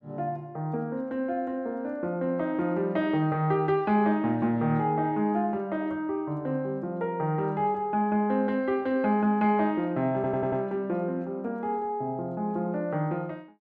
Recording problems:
stutter; at 10 s

